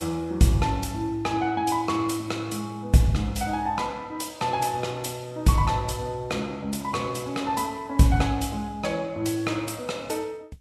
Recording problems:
codec artefacts; Vorbis, log-spectral distance 3 dB, nothing above 12.7 kHz

